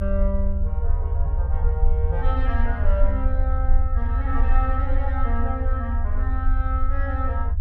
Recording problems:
low-frequency rumble; below 64 Hz, strongest tone 20 Hz, SNR -7 dB

